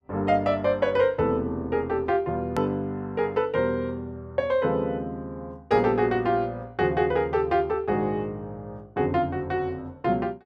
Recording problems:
hard cut with a click; at 2.5 s

